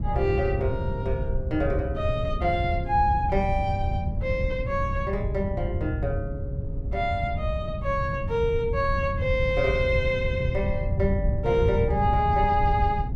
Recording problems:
wind noise; below 120 Hz, SNR 3 dB

